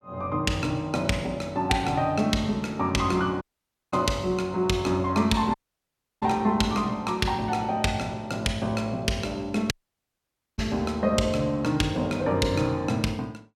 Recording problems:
audio cutting out; at 3.5 s for 0.5 s, at 5.5 s for 0.5 s and at 9.5 s for 1 s

